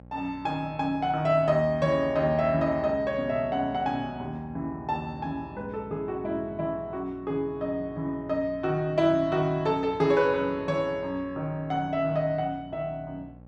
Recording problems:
electrical hum; 60 Hz, harmonics up to 1.1 kHz, SNR 21 dB

